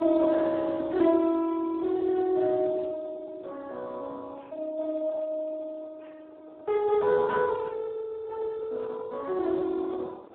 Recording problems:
telephone audio; 280 Hz to 2 kHz, Speex
wind noise; below 730 Hz, SNR 22 dB

